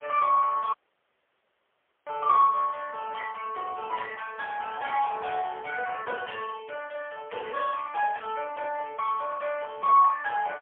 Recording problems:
phone line; 370 Hz to 3.3 kHz, AMR-NB, then MP3
audio cutting out; at 0.5 s for 1.5 s

